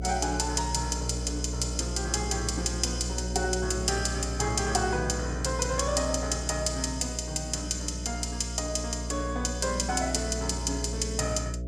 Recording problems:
mains hum; 60 Hz, harmonics up to 660 Hz, SNR 6 dB

